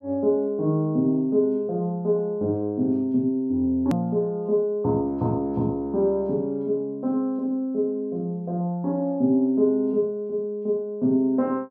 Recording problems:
edit click; at 4 s

